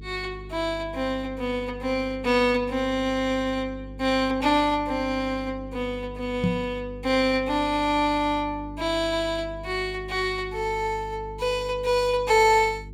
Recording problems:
electrical hum; 50 Hz, harmonics up to 450 Hz, SNR 16 dB
microphone thump; at 6.5 s; peak +4 dB vs average level

